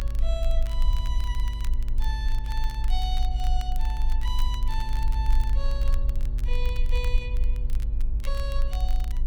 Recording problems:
hum; 60 Hz, harmonics up to 840 Hz, SNR 5 dB
rumble; below 50 Hz, strongest tone 22 Hz, SNR -10 dB
crackle; vinyl, SNR 12 dB

